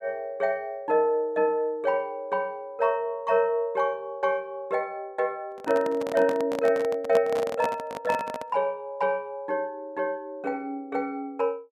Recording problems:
microphone handling noise; from 5.5 to 8.5 s; peak +1 dB vs average level

